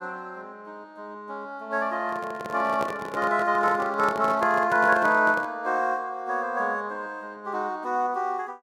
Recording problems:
handling noise; from 2 to 5.5 s; peak -4 dB vs average level

